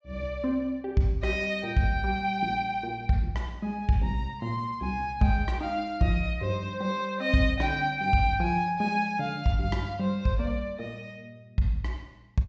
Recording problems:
treble cut off; nothing above 8 kHz

